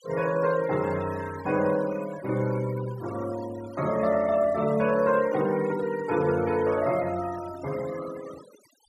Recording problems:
noise reduction artefacts; signal-to-artefact ratio 17 dB

